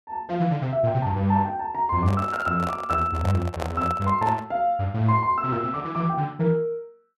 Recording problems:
handling noise; from 2 to 4.5 s; peak -2 dB vs average level

